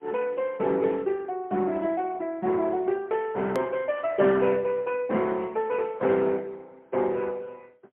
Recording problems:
phone line; 170 Hz to 3.6 kHz, AMR-NB, then MP3
edit click; at 3.5 s

